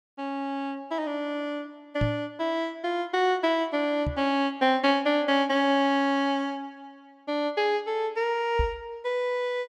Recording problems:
knock on the microphone; at 2 s, at 4 s and at 8.5 s; peak +2 dB vs average level

